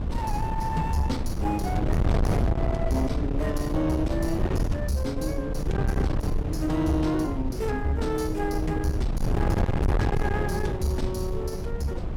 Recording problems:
distortion; soft clipping, signal-to-distortion ratio 8 dB
wind noise; below 190 Hz, SNR 0 dB

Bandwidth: 17.5 kHz